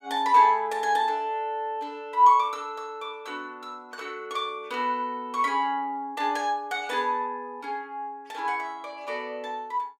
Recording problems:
none

